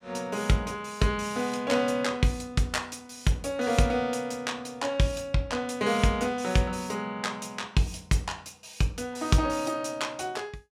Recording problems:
none

